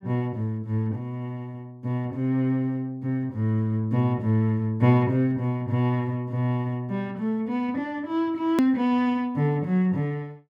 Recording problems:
hard cut with a click; at 8.5 s

